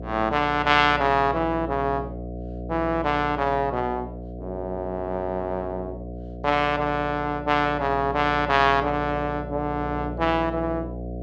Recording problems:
hum; 60 Hz, harmonics up to 720 Hz, SNR 11 dB

